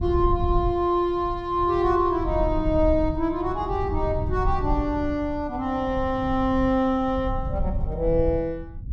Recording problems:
low-frequency rumble; below 86 Hz, SNR 8 dB

